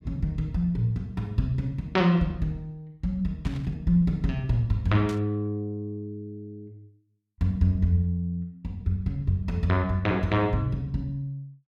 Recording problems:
burst of static; at 3.5 s and at 5 s; peak -11 dB vs average level

